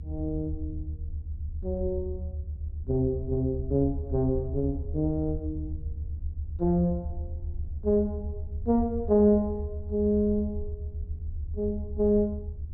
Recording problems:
low-frequency rumble; below 80 Hz, SNR 8 dB

